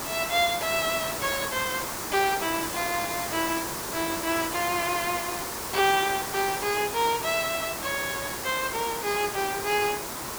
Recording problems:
hiss; SNR 4 dB

